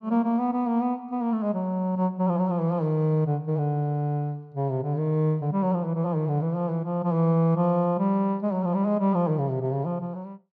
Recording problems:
none

